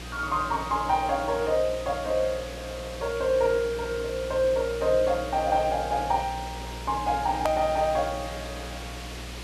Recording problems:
electrical hum; 60 Hz, harmonics up to 540 Hz, SNR 15 dB
hiss; slope -2 dB per octave, SNR 14 dB
click at an edit; at 7.5 s

